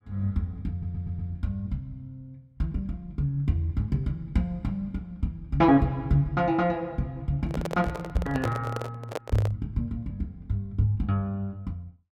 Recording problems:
audio stuttering; at 0.5 s
handling noise; from 7.5 to 9.5 s; peak +1 dB vs average level

